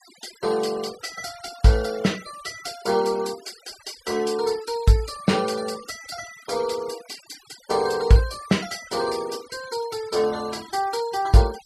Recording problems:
denoising artefacts; signal-to-artefact ratio 18 dB

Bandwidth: 13.5 kHz